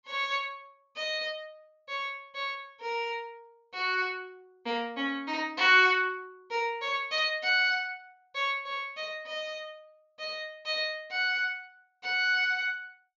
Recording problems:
treble cut off; nothing above 7.1 kHz

